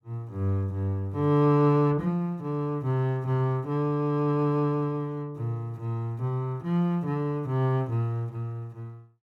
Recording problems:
none

